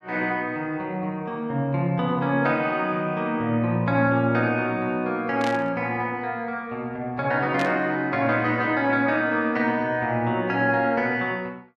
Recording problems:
static burst; at 5.5 s and at 7.5 s; peak -5 dB vs average level

